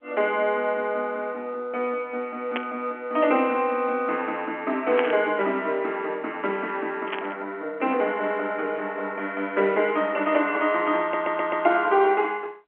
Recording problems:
telephone audio; 260 Hz to 3.3 kHz, G.711
burst of static; at 2.5 s, at 5 s and at 7 s; peak +1 dB vs average level
audio stuttering; at 11 s

